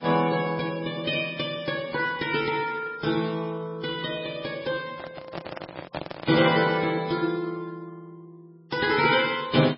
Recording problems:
lossy compression; Vorbis, then MP3, log-spectral distance 4 dB, nothing above 5 kHz
handling noise; from 5 to 6.5 s; peak -2 dB vs average level

